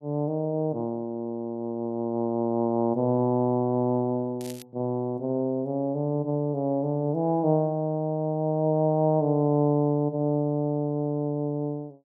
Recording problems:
crackling; at 4.5 s; loose cable, SNR 20 dB

